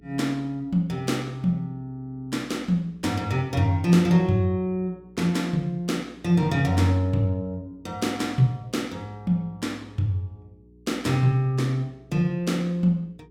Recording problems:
hum; 60 Hz, harmonics up to 420 Hz, SNR 29 dB

